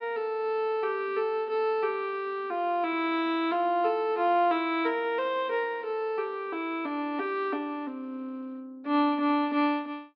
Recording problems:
low-pass filter; nothing above 5.5 kHz

